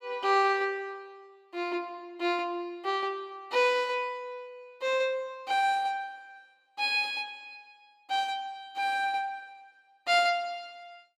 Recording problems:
none

